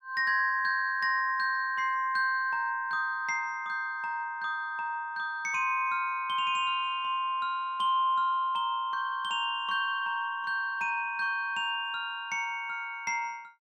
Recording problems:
none

